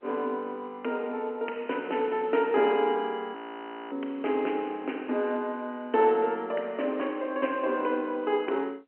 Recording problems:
phone line; 220 Hz to 3.1 kHz, G.711
frozen audio; at 3.5 s for 0.5 s

